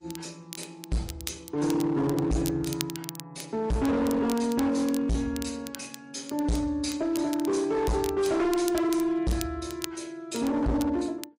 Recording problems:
lossy compression; MP3, then MP3, log-spectral distance 2 dB, nothing above 11 kHz
distortion; hard clipping, signal-to-distortion ratio 7 dB
crackle; vinyl, SNR 14 dB

